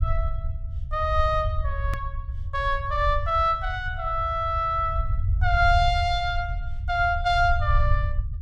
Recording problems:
rumble; below 84 Hz, SNR 4 dB
hard cut with a click; at 2 s

